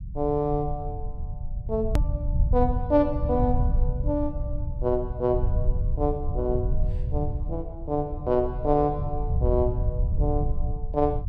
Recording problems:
low-frequency rumble; below 86 Hz, SNR 2 dB
click at an edit; at 2 s

